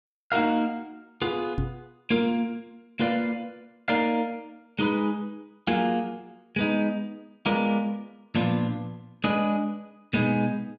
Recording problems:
microphone bump; at 1.5 s; peak +2 dB vs average level

